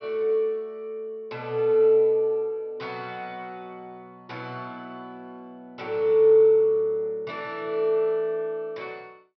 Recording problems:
treble cut off; nothing above 5.5 kHz

